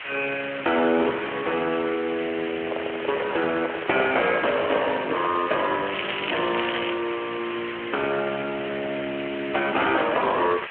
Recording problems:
telephone audio; 300 Hz to 3 kHz, Speex
hiss; SNR 8 dB
handling noise; from 2.5 to 5.5 s; peak -1 dB vs average level
crackle; from 6 to 7 s; loose cable, SNR 5 dB

